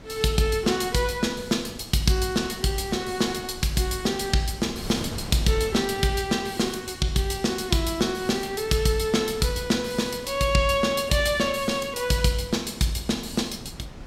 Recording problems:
wind noise; below 480 Hz, SNR 17 dB

